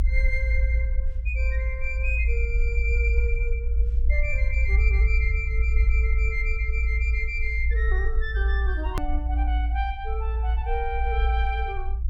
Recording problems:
low-frequency rumble; below 58 Hz, strongest tone 56 Hz, SNR -5 dB
hard cut with a click; at 9 s

